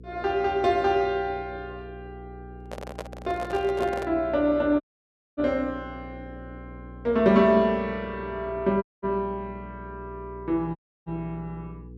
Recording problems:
electrical hum; 60 Hz, harmonics up to 480 Hz, SNR 18 dB
handling noise; from 2.5 to 4 s; peak -4 dB vs average level
dropout; at 5 s for 0.5 s, at 9 s and at 11 s

